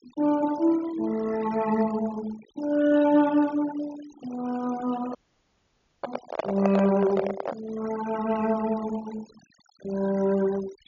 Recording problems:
treble cut off; nothing above 7 kHz
denoising artefacts; signal-to-artefact ratio 17 dB
microphone handling noise; from 5 to 7.5 s; peak +3 dB vs average level
frozen audio; at 5 s for 1 s

